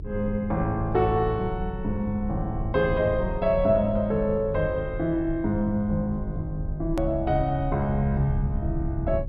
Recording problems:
treble cut off; nothing above 5.5 kHz
mains hum; 50 Hz, harmonics up to 450 Hz, SNR 19 dB
low-frequency rumble; below 98 Hz, strongest tone 34 Hz, SNR 9 dB
hard cut with a click; at 7 s

